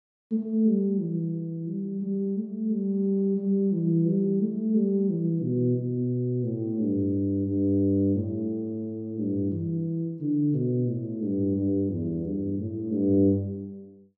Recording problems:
none

